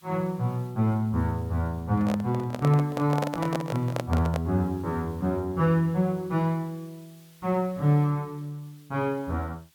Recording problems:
hiss; SNR 29 dB
microphone handling noise; from 2 to 4.5 s; peak +1 dB vs average level

